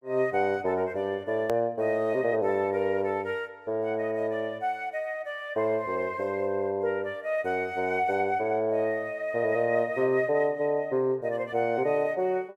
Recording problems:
click at an edit; at 1.5 s

